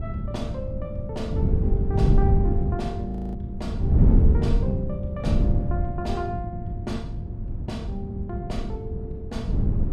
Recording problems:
wind noise; below 130 Hz, SNR -7 dB
audio freezing; at 3 s

